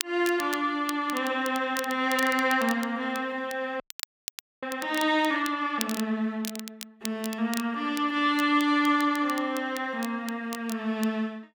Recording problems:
crackling; vinyl, SNR 14 dB
audio freezing; at 4 s for 1 s

